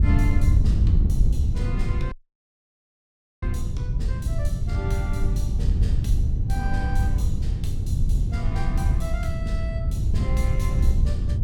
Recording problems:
wind noise; below 96 Hz, SNR -12 dB
dropout; at 2 s for 1.5 s

